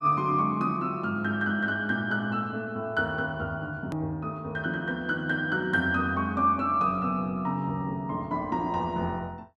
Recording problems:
click at an edit; at 4 s

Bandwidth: 12 kHz